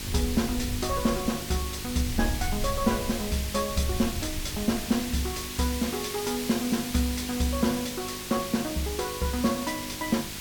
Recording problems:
hum; 50 Hz, harmonics up to 950 Hz, SNR 15 dB
background hiss; slope +2 dB per octave, SNR 6 dB
wind noise; below 90 Hz, SNR 9 dB

